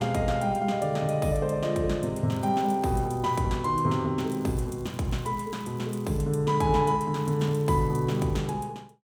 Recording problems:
crackle; from 2.5 to 3.5 s, from 4 to 6 s and from 7 to 8.5 s; loose cable, SNR 28 dB

